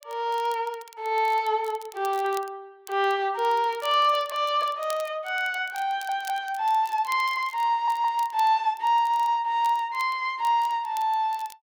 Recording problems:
crackling; vinyl, SNR 23 dB
stutter; at 6 s, at 7.5 s and at 9 s

